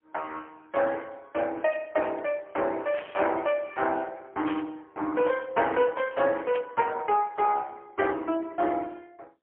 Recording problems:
phone line; 280 Hz to 3.3 kHz, AMR-NB, then MP3
static burst; at 3 s, at 4.5 s and at 6.5 s; peak -7 dB vs average level

